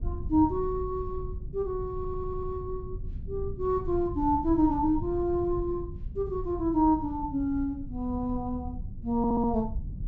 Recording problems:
low-pass filter; nothing above 8 kHz
rumble; below 96 Hz, SNR 10 dB
stutter; at 2 s and at 9 s

